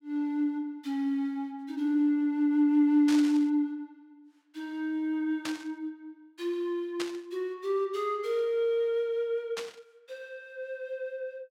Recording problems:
static burst; 4 times, first at 3 s; peak -2 dB vs average level

